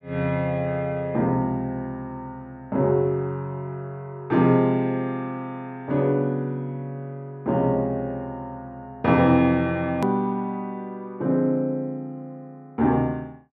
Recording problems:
click at an edit; at 10 s

